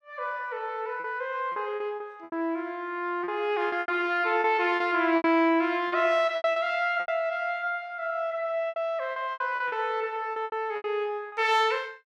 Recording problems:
packet loss; 11% of the sound replaced, filled with repeated pitch periods

